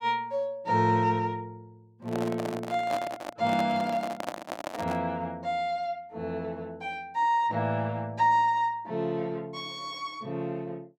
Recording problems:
microphone handling noise; from 2 to 5 s; peak 0 dB vs average level

